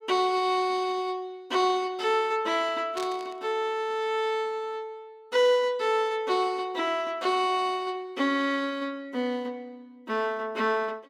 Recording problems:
static burst; at 3 s; peak -7 dB vs average level

